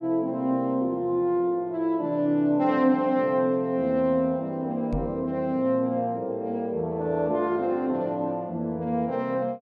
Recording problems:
microphone bump; at 5 s; peak -2 dB vs average level

